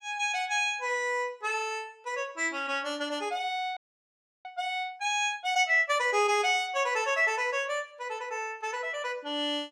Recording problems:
frozen audio; at 4 s for 0.5 s

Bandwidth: 17 kHz